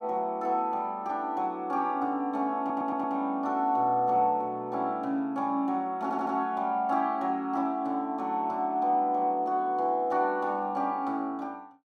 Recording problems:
audio stuttering; at 2.5 s and at 6 s

